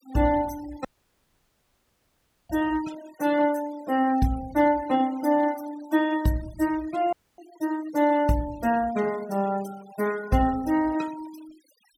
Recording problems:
denoising artefacts; signal-to-artefact ratio 21 dB
audio cutting out; at 1 s for 1.5 s and at 7 s

